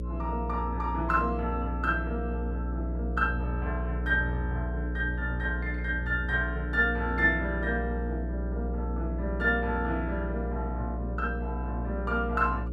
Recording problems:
electrical hum; 60 Hz, harmonics up to 540 Hz, SNR 3 dB

